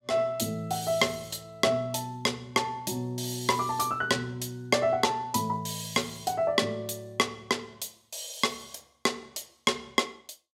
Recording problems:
none

